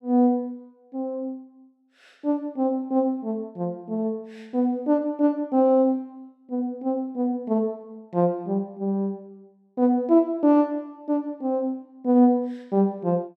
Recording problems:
none

